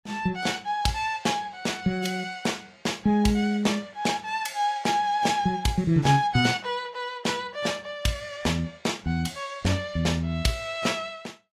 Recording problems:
lossy compression; AAC, log-spectral distance 3 dB, nothing above 14.7 kHz

